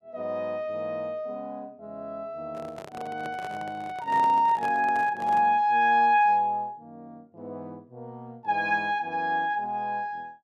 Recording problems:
handling noise; from 2.5 to 5.5 s; peak -9 dB vs average level

